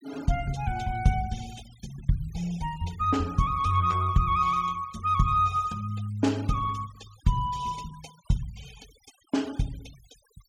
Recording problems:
noise reduction artefacts; signal-to-artefact ratio 22 dB

